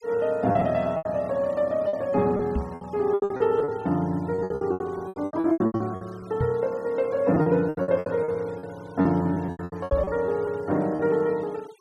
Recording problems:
noise reduction artefacts; signal-to-artefact ratio 25 dB
packet loss; 17% of the sound replaced, filled with repeated pitch periods
microphone thump; at 2.5 s, at 6.5 s and at 10 s; peak +2 dB vs average level

